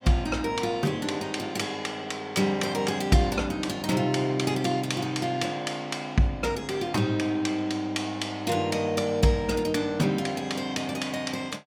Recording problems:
none

